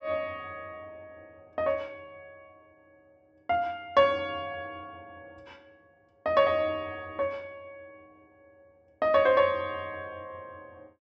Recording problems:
treble missing; nothing above 8 kHz

